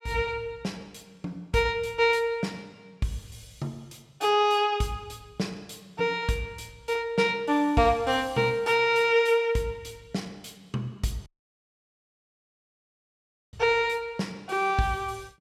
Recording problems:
dropout; at 11 s for 2.5 s

